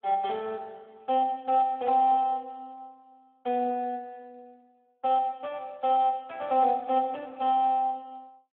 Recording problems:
phone line; 220 Hz to 3.1 kHz, Speex

